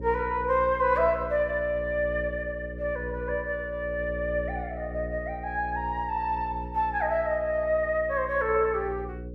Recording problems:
hum; 60 Hz, harmonics up to 540 Hz, SNR 11 dB

